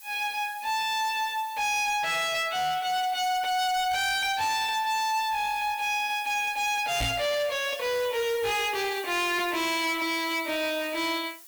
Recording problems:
distorted audio; hard clipping, signal-to-distortion ratio 8 dB
background hiss; slope +4 dB per octave, SNR 18 dB
knock on the microphone; at 7 s; peak +2 dB vs average level

